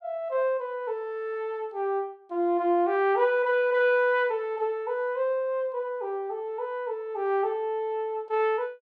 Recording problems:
none

